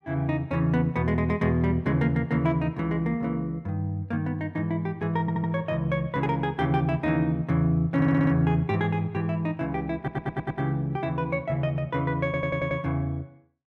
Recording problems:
audio stuttering; 4 times, first at 5 s

